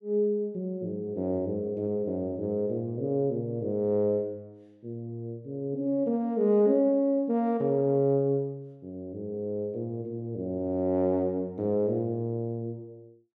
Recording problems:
none

